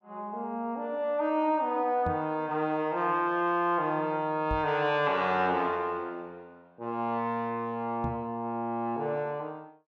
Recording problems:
microphone thump; at 2 s, at 4.5 s and at 8 s; peak -2 dB vs average level

